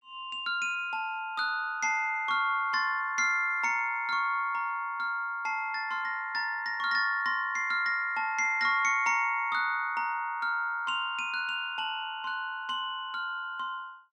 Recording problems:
none

